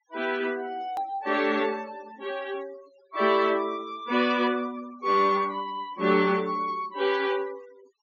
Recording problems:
treble cut off; nothing above 6.9 kHz
noise reduction artefacts; signal-to-artefact ratio 22 dB
click at an edit; at 1 s

